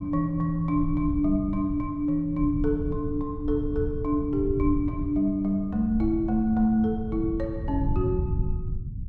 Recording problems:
low-frequency rumble; below 120 Hz, SNR 7 dB

